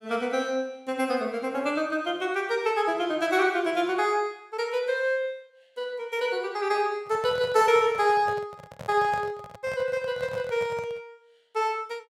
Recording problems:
microphone handling noise; from 7 to 11 s; peak -8 dB vs average level

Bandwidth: 16 kHz